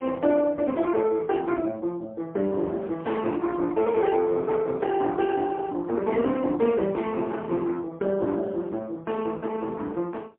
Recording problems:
telephone audio; 190 Hz to 3.4 kHz, AMR-NB, then MP3
microphone handling noise; from 2.5 to 5 s; peak -12 dB vs average level

